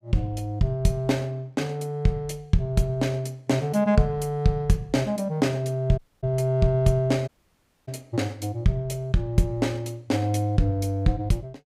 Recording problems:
dropout; at 6 s and at 7.5 s for 0.5 s

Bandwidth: 15.5 kHz